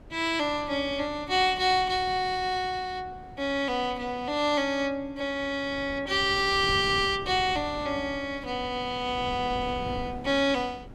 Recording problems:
wind noise; below 320 Hz, SNR 17 dB

